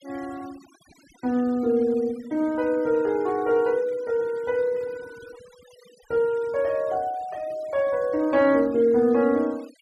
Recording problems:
denoising artefacts; signal-to-artefact ratio 26 dB

